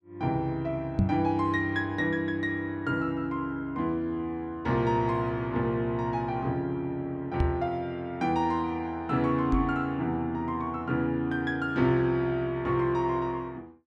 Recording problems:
knock on the microphone; at 1 s, at 7.5 s and at 9.5 s; peak +7 dB vs average level

